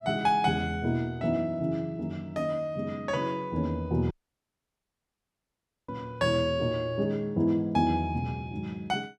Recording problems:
audio cutting out; at 4 s for 2 s

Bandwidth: 13 kHz